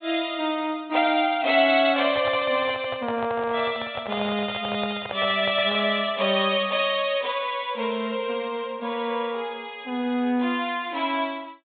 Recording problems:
treble missing; nothing above 4 kHz
microphone handling noise; from 2 to 6 s; peak -4 dB vs average level

